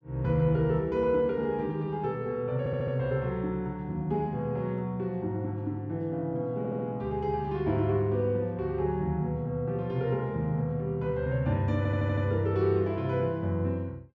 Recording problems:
stutter; at 2.5 s, at 6.5 s and at 12 s

